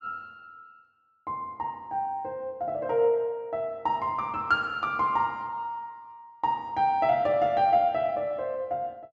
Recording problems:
none

